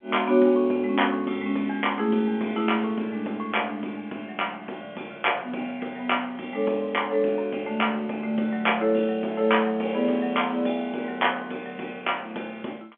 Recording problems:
phone line; 220 Hz to 3.4 kHz, G.711

